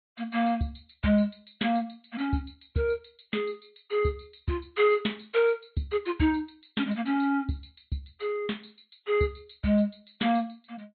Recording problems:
treble missing; nothing above 4.1 kHz
lossy codec; MP3, log-spectral distance 6 dB

